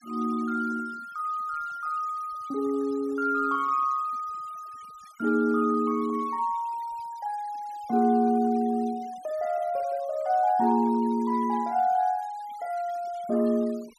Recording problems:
denoising artefacts; signal-to-artefact ratio 25 dB

